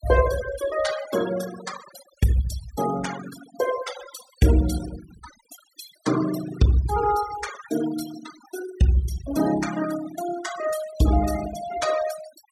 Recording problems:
denoising artefacts; signal-to-artefact ratio 10 dB

